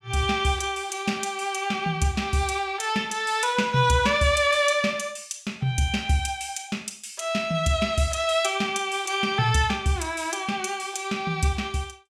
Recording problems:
none

